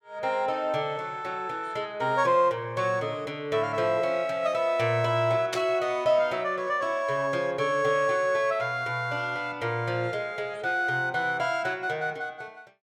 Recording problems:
static burst; at 5.5 s; peak 0 dB vs average level

